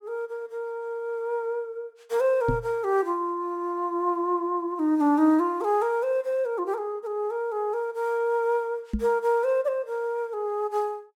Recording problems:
microphone bump; at 2.5 s and at 9 s; peak +2 dB vs average level

